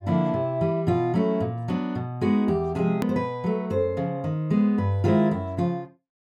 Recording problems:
edit click; at 3 s

